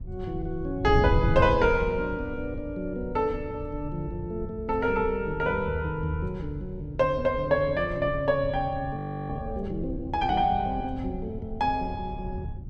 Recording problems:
wind on the microphone; below 120 Hz, SNR 8 dB
frozen audio; at 9 s

